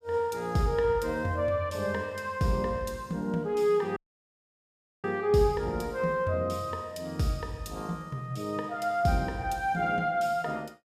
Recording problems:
audio cutting out; at 4 s for 1 s

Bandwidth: 15.5 kHz